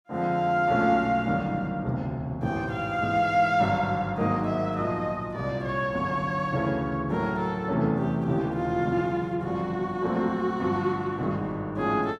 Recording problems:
none

